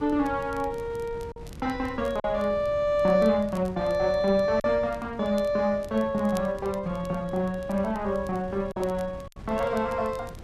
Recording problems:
wind noise; below 230 Hz, SNR 17 dB
crackling; vinyl, SNR 27 dB
packet loss; 2% of the sound replaced, filled with silence

